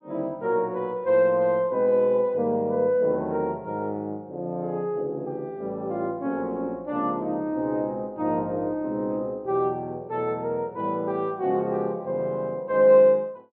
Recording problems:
treble cut off; nothing above 4.5 kHz

